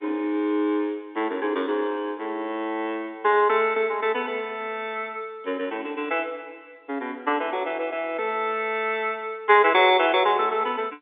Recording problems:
telephone audio; 240 Hz to 3.6 kHz, G.711

